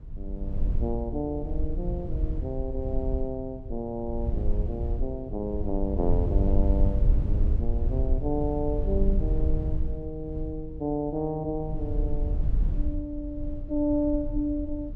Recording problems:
rumble; below 68 Hz, SNR -1 dB

